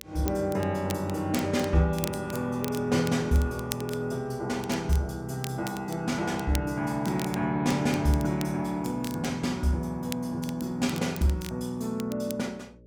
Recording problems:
electrical hum; 60 Hz, harmonics up to 600 Hz, SNR 25 dB
crackling; vinyl, SNR 15 dB

